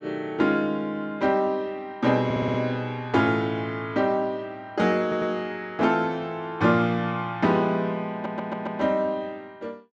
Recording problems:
audio stuttering; at 2.5 s, at 5 s and at 8 s

